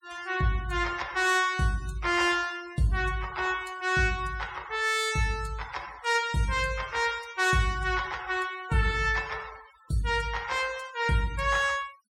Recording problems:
denoising artefacts; signal-to-artefact ratio 20 dB

